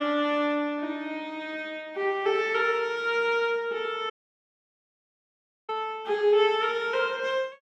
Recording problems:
audio cutting out; at 4 s for 1.5 s

